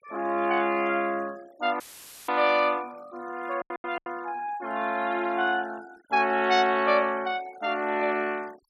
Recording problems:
noise reduction artefacts; signal-to-artefact ratio 23 dB
packet loss; 3% of the sound replaced, filled with silence
audio cutting out; at 2 s; filled with static

